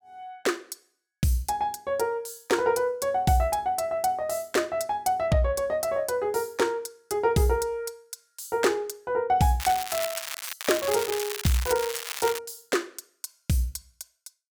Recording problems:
crackling; at 9.5 s and from 11 to 12 s; loose cable, SNR 6 dB

